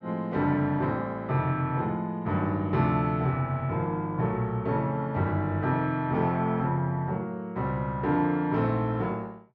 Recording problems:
none

